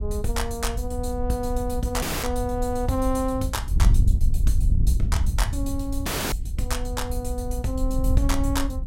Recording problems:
wind on the microphone; below 78 Hz, SNR -2 dB
dropout; at 2 s and at 6 s

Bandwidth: 16 kHz